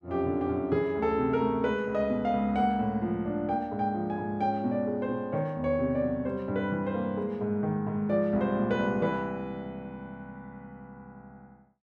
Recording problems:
none

